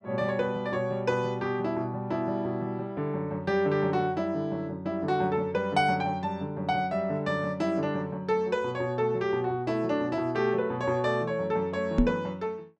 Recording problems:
knock on the microphone; at 12 s; peak +9 dB vs average level

